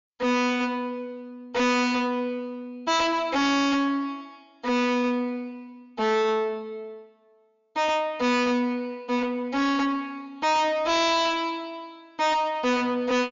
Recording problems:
treble missing; nothing above 7.2 kHz
distortion; soft clipping, signal-to-distortion ratio 6 dB

